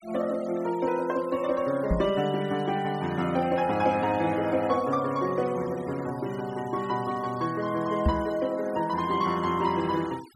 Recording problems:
denoising artefacts; signal-to-artefact ratio 19 dB
microphone thump; at 2 s and at 8 s; peak +6 dB vs average level

